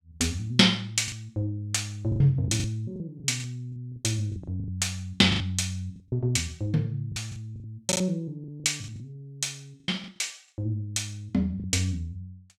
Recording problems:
packet loss; 11% of the sound replaced, filled with the last packet

